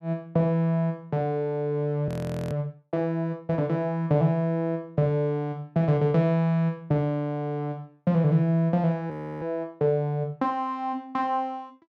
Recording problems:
audio freezing; at 2 s and at 9 s

